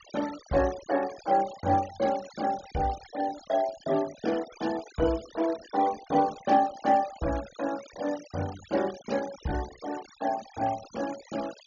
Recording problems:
low-pass filter; nothing above 6.9 kHz
noise reduction artefacts; signal-to-artefact ratio 16 dB

